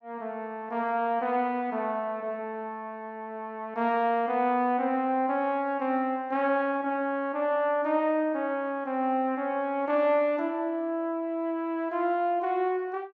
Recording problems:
none

